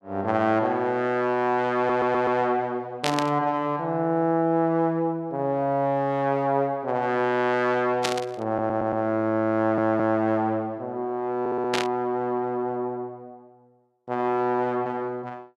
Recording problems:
audio stuttering; 4 times, first at 2 s
static burst; at 3 s, at 8 s and at 12 s; peak +3 dB vs average level

